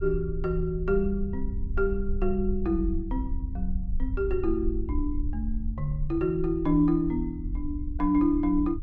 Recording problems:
low-frequency rumble; below 58 Hz, strongest tone 22 Hz, SNR 6 dB

